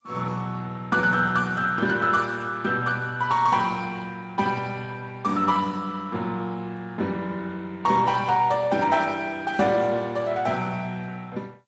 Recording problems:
lossy compression; G.722, then Speex, log-spectral distance 4 dB, nothing above 7.3 kHz

